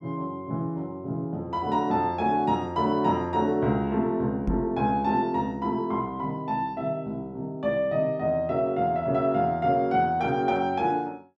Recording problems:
knock on the microphone; at 4.5 s; peak +1 dB vs average level

